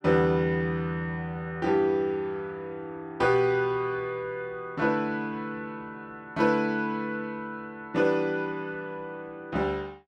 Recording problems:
none

